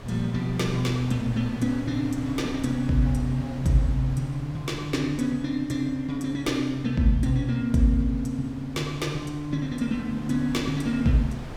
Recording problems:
wind on the microphone; below 570 Hz, SNR 14 dB

